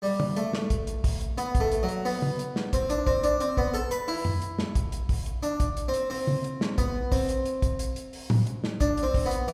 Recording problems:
none

